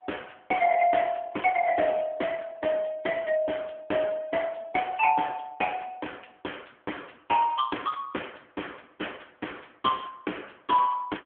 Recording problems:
telephone audio; 320 Hz to 3.3 kHz, AMR-NB

